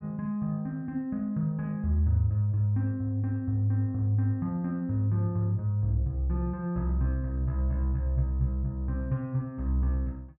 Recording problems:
none

